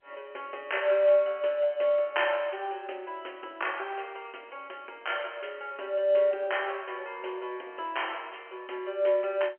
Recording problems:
phone line; 300 Hz to 3.2 kHz, G.711

